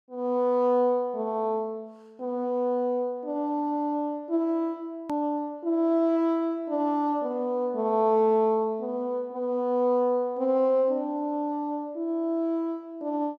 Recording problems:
hard cut with a click; at 5 s

